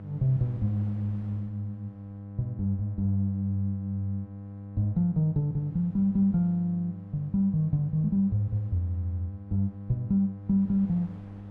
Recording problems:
electrical hum; 50 Hz, harmonics up to 800 Hz, SNR 13 dB
wind on the microphone; below 520 Hz, SNR 29 dB

